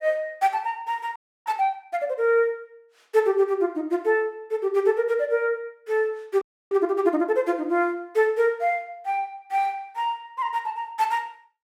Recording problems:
audio freezing; at 1 s and at 6.5 s

